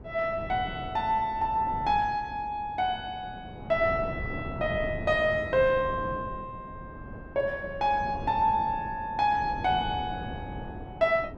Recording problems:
wind noise; below 360 Hz, SNR 12 dB

